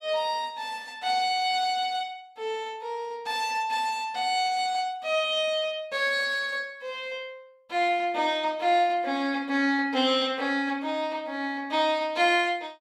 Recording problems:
none

